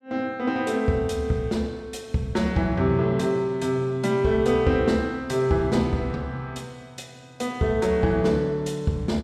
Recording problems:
none

